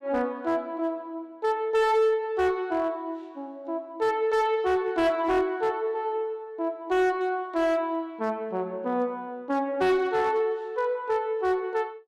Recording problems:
distorted audio; hard clipping, uneven, signal-to-distortion ratio 10 dB

